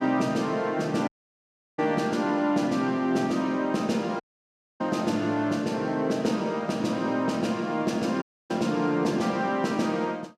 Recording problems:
audio cutting out; at 1 s for 0.5 s, at 4 s for 0.5 s and at 8 s

